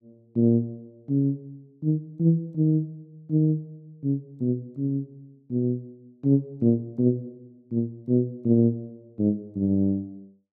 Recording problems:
none

